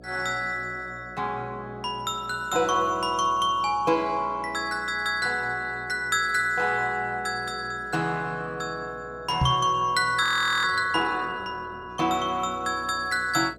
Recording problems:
electrical hum; 60 Hz, harmonics up to 720 Hz, SNR 23 dB
microphone bump; at 9.5 s; peak +5 dB vs average level
frozen audio; at 10 s

